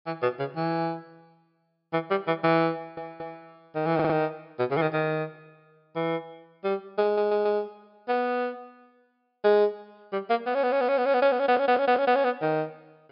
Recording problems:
treble missing; nothing above 5.5 kHz
stutter; 4 times, first at 3 s

